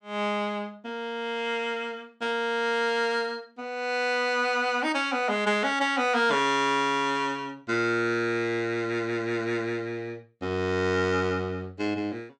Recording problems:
none

